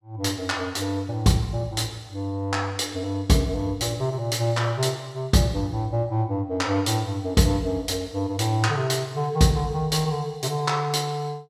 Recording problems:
none

